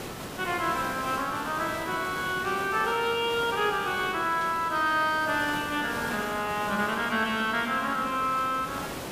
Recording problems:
hiss; slope -5 dB per octave, SNR 10 dB
burst of static; at 2.5 s, at 4.5 s and at 6 s; peak -13 dB vs average level

